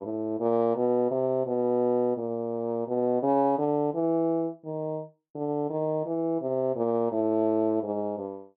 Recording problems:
none

